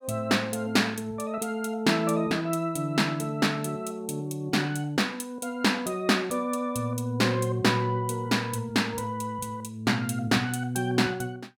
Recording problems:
none

